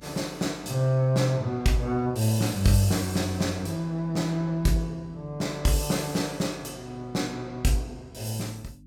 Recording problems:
hum; 50 Hz, harmonics up to 300 Hz, SNR 25 dB

